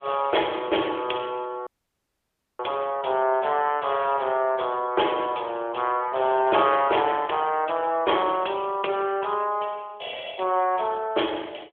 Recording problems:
phone line; 300 Hz to 3.4 kHz, AMR-NB
dropout; at 1.5 s for 1 s

